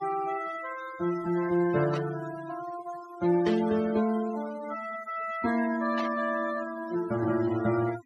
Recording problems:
noise reduction artefacts; signal-to-artefact ratio 13 dB
burst of static; at 2 s, at 3.5 s and at 6 s; peak -6 dB vs average level

